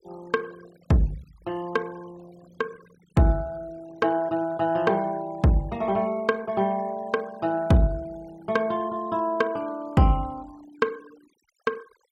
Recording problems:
noise reduction artefacts; signal-to-artefact ratio 25 dB

